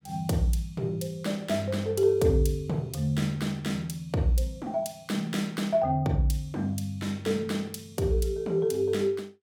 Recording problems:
none

